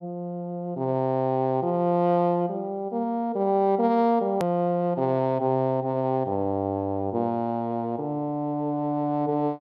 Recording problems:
click at an edit; at 4.5 s

